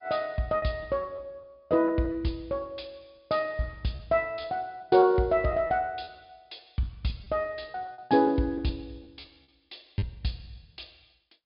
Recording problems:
low-pass filter; nothing above 5 kHz
lossy codec; G.722, log-spectral distance 2 dB
packet loss; 8% of the sound replaced, filled with repeated pitch periods

